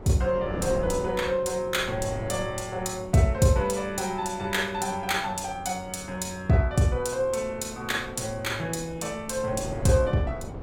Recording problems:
wind noise; below 490 Hz, SNR 13 dB

